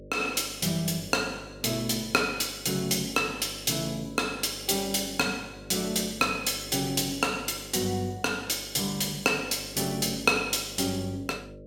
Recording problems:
mains hum; 50 Hz, harmonics up to 600 Hz, SNR 18 dB

